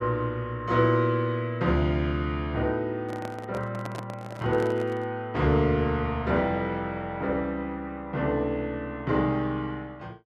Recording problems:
handling noise; from 3 to 5 s; peak -5 dB vs average level

